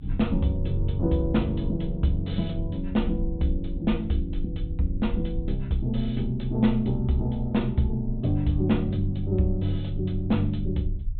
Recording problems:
low-pass filter; nothing above 4 kHz
hum; 50 Hz, harmonics up to 450 Hz, SNR 22 dB
low-frequency rumble; below 58 Hz, strongest tone 30 Hz, SNR 9 dB

